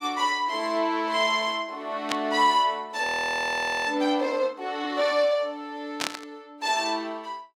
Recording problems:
static burst; at 2 s and at 6 s; peak +2 dB vs average level
audio freezing; at 3 s for 1 s

